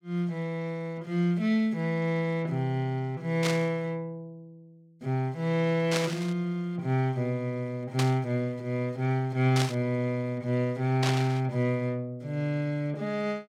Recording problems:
static burst; 5 times, first at 3.5 s; peak +2 dB vs average level

